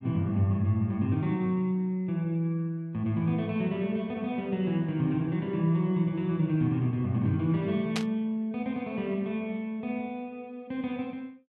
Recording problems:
static burst; at 8 s; peak +1 dB vs average level

